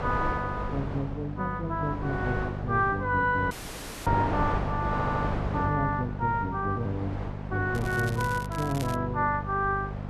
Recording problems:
electrical hum; 50 Hz, harmonics up to 700 Hz, SNR 7 dB
wind on the microphone; below 850 Hz, SNR 7 dB
audio cutting out; at 3.5 s for 0.5 s
audio stuttering; at 5 s
crackle; from 8 to 9 s; loose cable, SNR 15 dB

